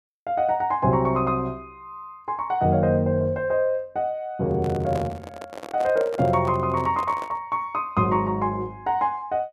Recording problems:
handling noise; from 4.5 to 7.5 s; peak -5 dB vs average level

